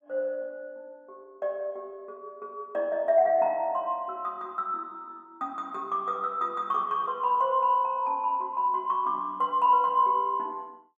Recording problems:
none

